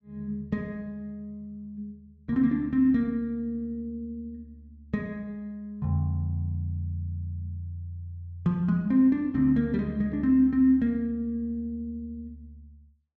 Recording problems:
none

